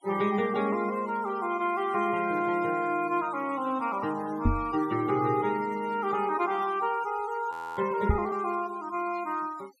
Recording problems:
denoising artefacts; signal-to-artefact ratio 20 dB
microphone thump; at 4.5 s and at 8 s; peak +7 dB vs average level
audio freezing; at 7.5 s

